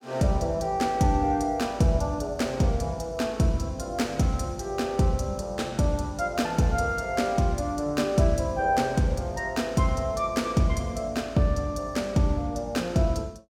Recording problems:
none

